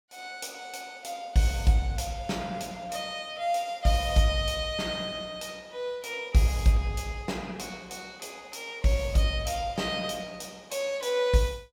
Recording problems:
none

